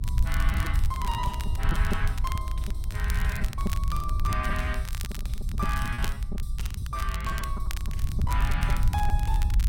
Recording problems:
rumble; below 78 Hz, SNR -5 dB
crackling; vinyl, SNR 8 dB
lost packets; 8% of the sound replaced, filled with repeated pitch periods

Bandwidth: 16.5 kHz